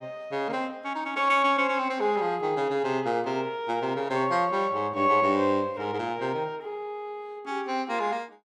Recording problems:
none

